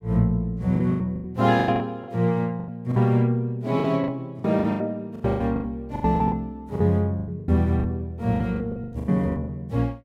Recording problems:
packet loss; 17% of the sound replaced, filled with the last packet

